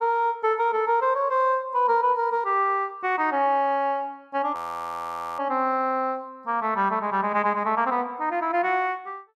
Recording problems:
frozen audio; at 4.5 s for 1 s

